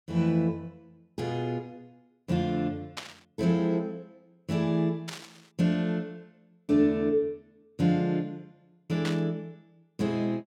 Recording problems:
static burst; at 3 s, at 5 s and at 9 s; peak -3 dB vs average level

